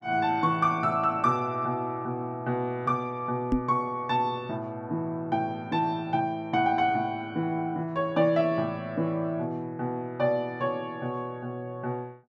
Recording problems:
microphone thump; at 3.5 s; peak +6 dB vs average level

